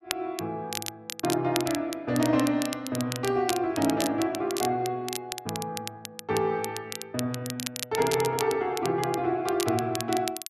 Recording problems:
crackle; vinyl, SNR 8 dB

